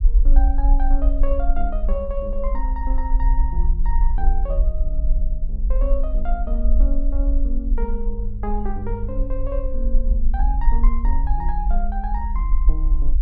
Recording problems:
low-frequency rumble; below 44 Hz, strongest tone 20 Hz, SNR -8 dB

